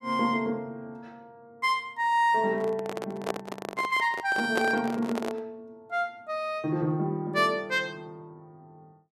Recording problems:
microphone handling noise; from 2.5 to 5.5 s; peak +3 dB vs average level

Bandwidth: 14 kHz